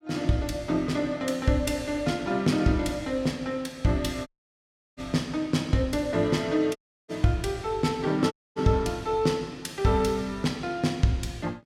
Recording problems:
dropout; at 4.5 s for 0.5 s, at 7 s and at 8.5 s

